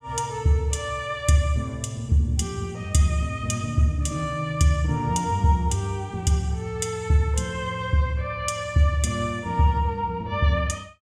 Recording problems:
none

